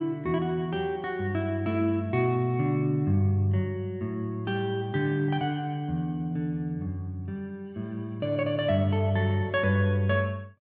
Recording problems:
none

